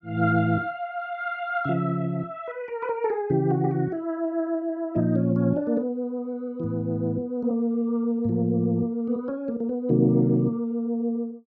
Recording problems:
none

